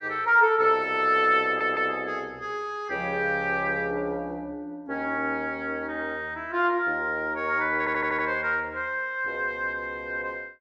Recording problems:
audio stuttering; at 1.5 s and at 8 s

